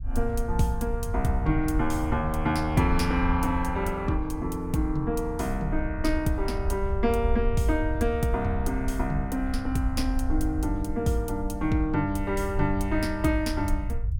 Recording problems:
rumble; below 70 Hz, SNR 6 dB

